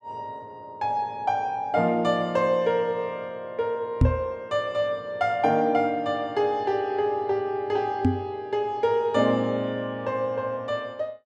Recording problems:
microphone thump; at 4 s and at 8 s; peak +9 dB vs average level

